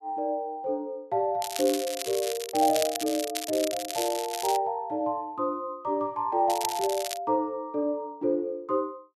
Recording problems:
crackling; from 1.5 to 4.5 s and at 6.5 s; loose cable, SNR 6 dB

